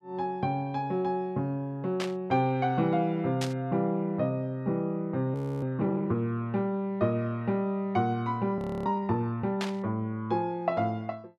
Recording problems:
static burst; at 2 s, at 3.5 s and at 9.5 s; peak -1 dB vs average level
audio freezing; at 5.5 s and at 8.5 s

